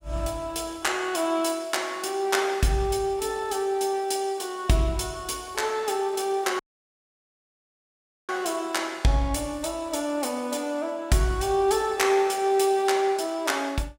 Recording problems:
dropout; at 6.5 s for 1.5 s

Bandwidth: 17.5 kHz